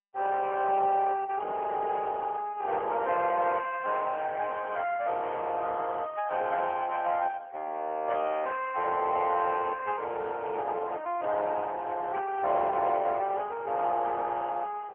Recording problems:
telephone audio; 370 Hz to 3.1 kHz, AMR-NB

